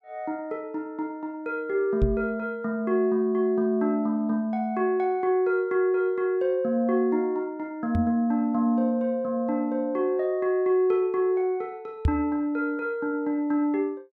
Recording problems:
knock on the microphone; at 2 s, at 8 s and at 12 s; peak +6 dB vs average level

